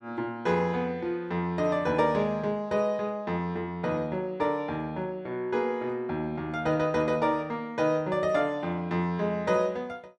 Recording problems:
none

